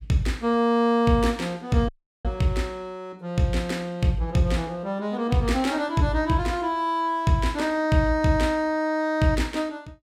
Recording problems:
audio cutting out; at 2 s

